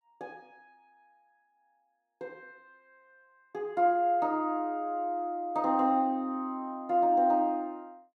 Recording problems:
none

